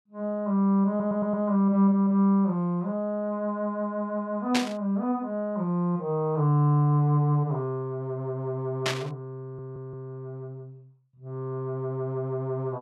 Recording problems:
audio stuttering; at 1 s and at 9.5 s
static burst; at 4.5 s and at 9 s; peak +3 dB vs average level

